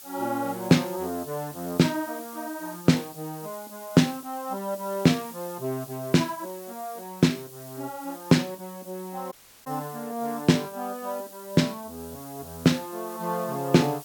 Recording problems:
background hiss; SNR 16 dB
audio cutting out; at 9.5 s

